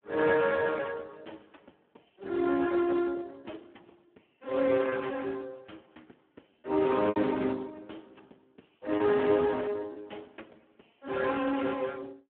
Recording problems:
telephone audio; 220 Hz to 2.1 kHz, Speex
lost packets; 2% of the sound replaced, filled with repeated pitch periods

